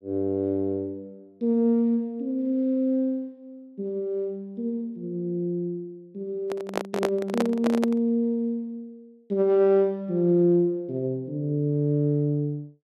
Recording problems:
microphone handling noise; from 6.5 to 8 s; peak +2 dB vs average level

